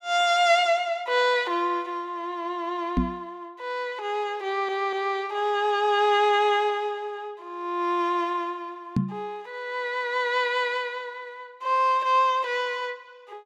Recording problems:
microphone thump; at 3 s and at 9 s; peak +4 dB vs average level
stutter; at 4.5 s

